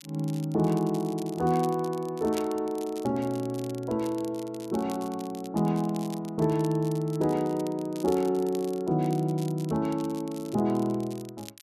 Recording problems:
crackling; vinyl, SNR 20 dB

